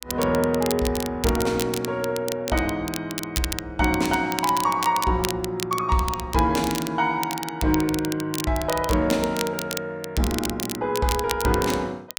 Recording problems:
crackle; vinyl, SNR 8 dB

